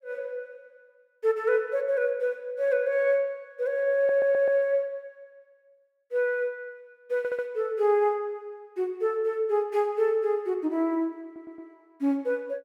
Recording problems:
audio stuttering; at 4 s, at 7 s and at 11 s

